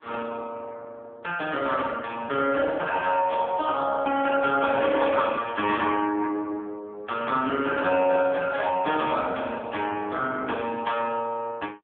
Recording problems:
phone line; 240 Hz to 3.4 kHz, AMR-NB

